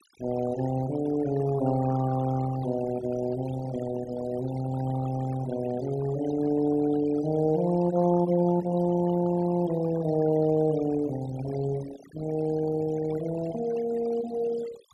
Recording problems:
noise reduction artefacts; signal-to-artefact ratio 15 dB

